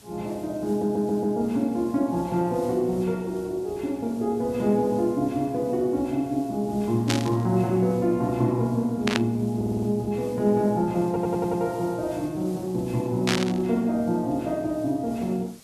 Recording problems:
background hiss; SNR 24 dB
audio stuttering; at 0.5 s, at 9.5 s and at 11 s
static burst; at 7 s, at 9 s and at 13 s; peak +4 dB vs average level

